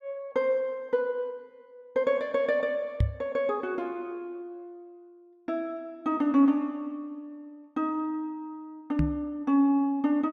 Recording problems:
microphone bump; at 3 s and at 9 s; peak +7 dB vs average level

